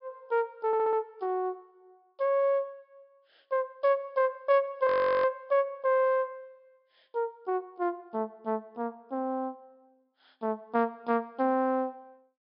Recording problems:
treble missing; nothing above 5.5 kHz
stutter; at 0.5 s
frozen audio; at 5 s

